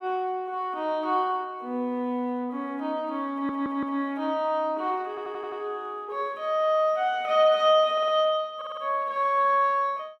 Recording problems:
stutter; 4 times, first at 3.5 s

